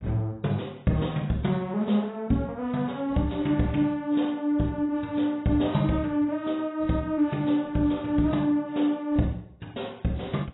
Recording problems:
lossy codec; AAC, log-spectral distance 3 dB, nothing above 3.9 kHz

